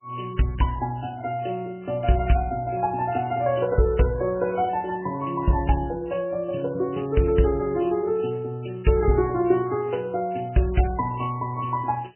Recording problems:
codec artefacts; MP3, log-spectral distance 4 dB, nothing above 3 kHz

